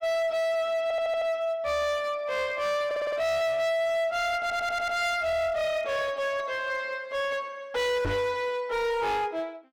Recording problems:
distorted audio; hard clipping, signal-to-distortion ratio 7 dB
audio stuttering; at 1 s, at 3 s and at 4.5 s
knock on the microphone; at 8 s; peak 0 dB vs average level

